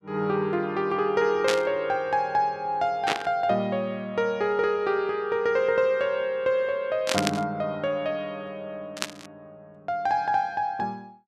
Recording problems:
burst of static; 4 times, first at 1.5 s; peak +4 dB vs average level

